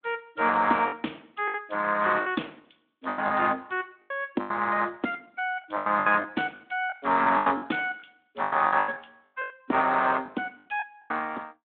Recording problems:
phone line; 190 Hz to 3.6 kHz, Speex
packet loss; 13% of the sound replaced, filled with the last packet

